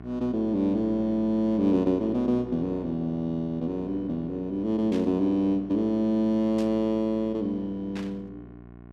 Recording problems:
hum; 60 Hz, harmonics up to 1.5 kHz, SNR 18 dB
static burst; at 5 s, at 6.5 s and at 8 s; peak -12 dB vs average level

